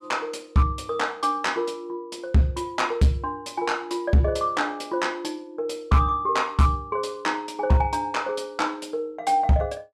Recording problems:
distortion; hard clipping, signal-to-distortion ratio 11 dB

